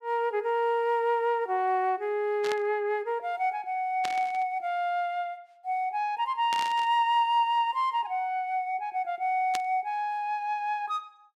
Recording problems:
static burst; 4 times, first at 2.5 s; peak -2 dB vs average level

